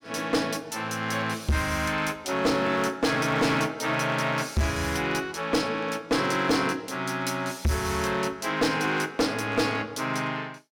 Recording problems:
distortion; hard clipping, signal-to-distortion ratio 7 dB

